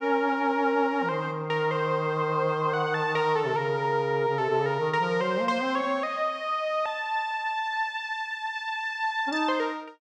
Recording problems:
none

